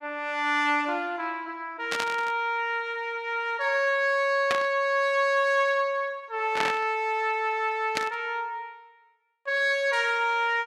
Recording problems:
static burst; 4 times, first at 2 s; peak +2 dB vs average level

